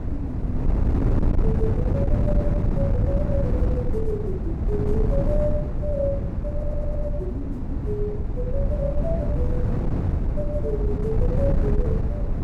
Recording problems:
wind on the microphone; below 150 Hz, SNR -6 dB
audio stuttering; at 6.5 s

